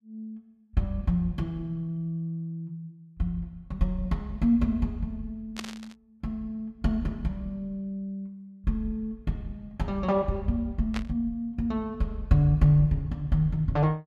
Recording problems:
burst of static; at 5.5 s and at 11 s; peak -3 dB vs average level

